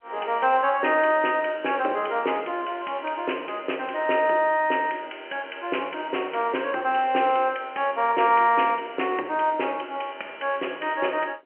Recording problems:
telephone audio; 280 Hz to 3.1 kHz, G.711

